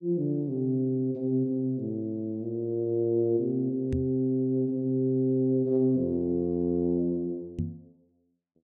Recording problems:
microphone bump; at 4 s and at 7.5 s; peak +1 dB vs average level

